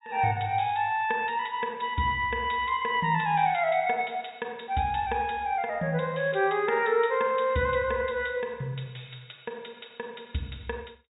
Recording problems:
treble cut off; nothing above 4 kHz

